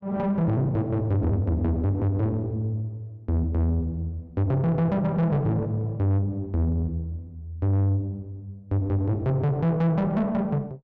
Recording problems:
distortion; soft clipping, signal-to-distortion ratio 10 dB

